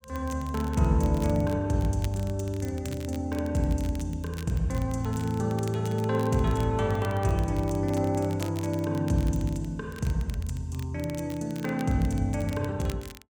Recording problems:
crackle; vinyl, SNR 20 dB

